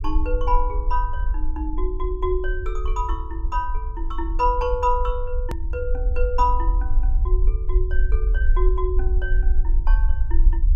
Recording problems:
low-frequency rumble; below 48 Hz, SNR -2 dB
click at an edit; at 5.5 s

